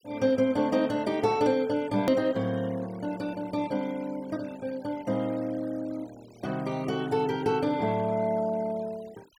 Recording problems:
noise reduction artefacts; signal-to-artefact ratio 23 dB
click at an edit; at 2 s

